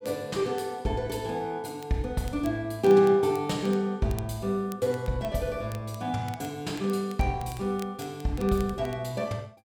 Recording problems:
crackling; vinyl, SNR 23 dB

